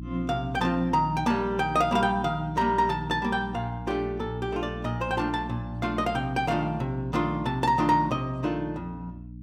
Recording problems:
hum; 60 Hz, harmonics up to 300 Hz, SNR 12 dB

